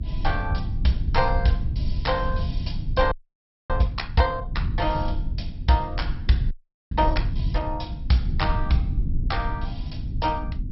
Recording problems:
lossy codec; MP2, log-spectral distance 3 dB, nothing above 5.5 kHz
hum; 50 Hz, harmonics up to 300 Hz, SNR 16 dB
rumble; below 94 Hz, SNR 3 dB
audio freezing; at 3 s for 0.5 s and at 6.5 s

